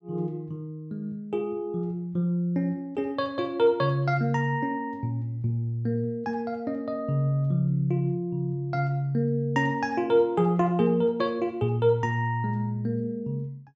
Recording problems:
none

